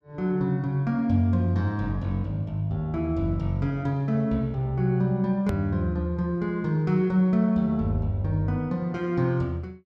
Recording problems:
hard cut with a click; at 5.5 s

